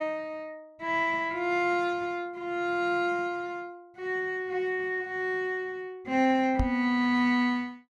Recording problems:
microphone thump; at 6.5 s; peak +3 dB vs average level

